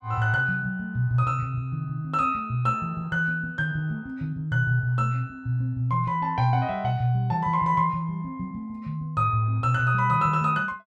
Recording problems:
none

